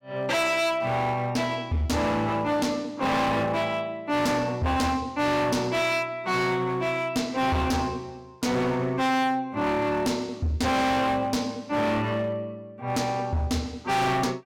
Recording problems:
distorted audio; hard clipping, signal-to-distortion ratio 7 dB

